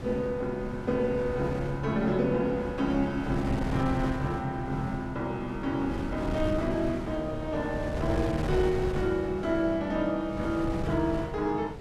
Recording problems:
electrical hum; 60 Hz, harmonics up to 480 Hz, SNR 23 dB
wind on the microphone; below 350 Hz, SNR 8 dB

